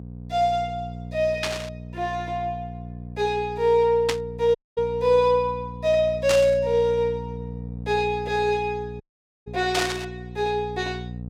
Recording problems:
electrical hum; 60 Hz, harmonics up to 540 Hz, SNR 13 dB
burst of static; 4 times, first at 1.5 s; peak +2 dB vs average level
dropout; at 4.5 s and at 9 s

